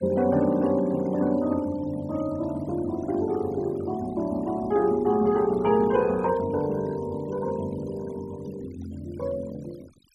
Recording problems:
noise reduction artefacts; signal-to-artefact ratio 20 dB

